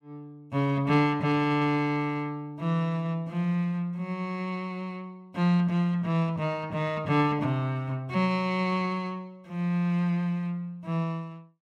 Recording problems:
none

